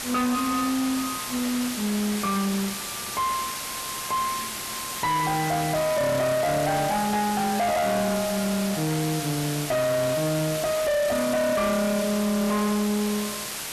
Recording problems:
distorted audio; soft clipping, signal-to-distortion ratio 7 dB
background hiss; SNR 3 dB

